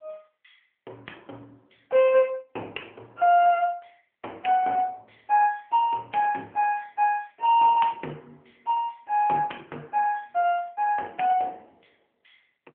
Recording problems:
phone line; 280 Hz to 3.1 kHz, AMR-NB

